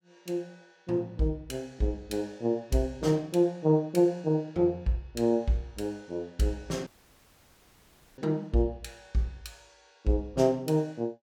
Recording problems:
audio cutting out; at 7 s for 1.5 s

